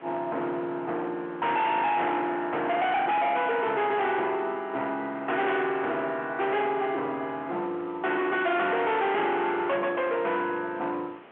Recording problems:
phone line; 260 Hz to 3.6 kHz, G.711
distorted audio; hard clipping, signal-to-distortion ratio 7 dB
background hiss; SNR 22 dB

